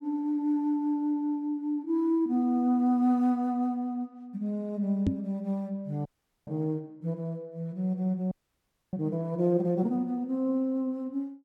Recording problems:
knock on the microphone; at 5 s; peak +7 dB vs average level
frozen audio; at 6 s and at 8.5 s for 0.5 s

